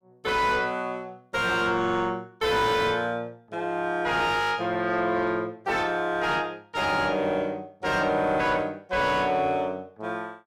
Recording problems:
distorted audio; soft clipping, signal-to-distortion ratio 6 dB

